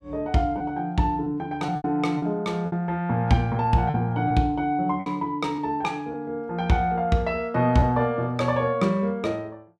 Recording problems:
lost packets; 5% of the sound replaced, filled with repeated pitch periods

